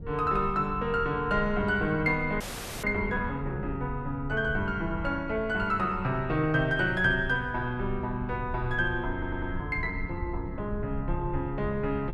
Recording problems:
rumble; below 94 Hz, SNR 11 dB
frozen audio; at 2.5 s
audio stuttering; at 9 s

